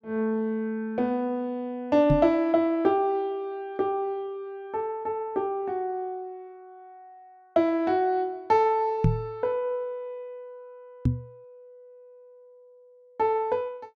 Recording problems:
knock on the microphone; at 2 s, at 9 s and at 11 s; peak +7 dB vs average level

